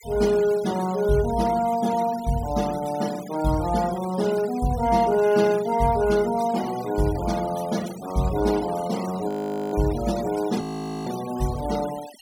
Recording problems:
noise reduction artefacts; signal-to-artefact ratio 16 dB
frozen audio; at 9.5 s and at 11 s

